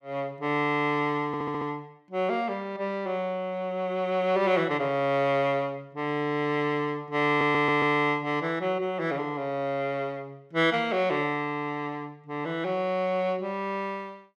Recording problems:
audio stuttering; at 1.5 s and at 7.5 s

